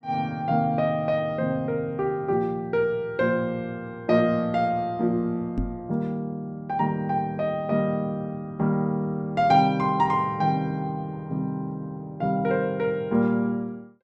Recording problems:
knock on the microphone; at 5.5 s; peak +2 dB vs average level

